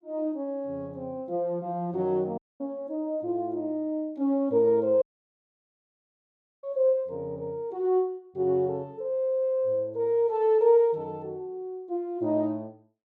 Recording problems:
dropout; at 2.5 s and at 5 s for 1.5 s

